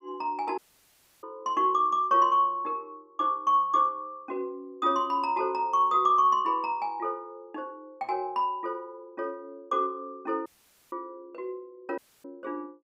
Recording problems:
dropout; at 0.5 s for 0.5 s, at 10 s and at 12 s

